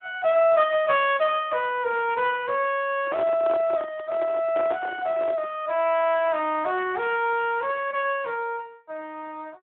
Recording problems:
telephone audio; 320 Hz to 3.4 kHz, Speex
microphone handling noise; from 3 to 5.5 s; peak -2 dB vs average level

